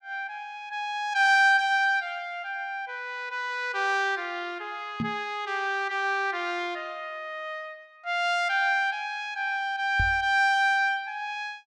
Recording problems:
microphone bump; at 5 s and at 10 s; peak 0 dB vs average level

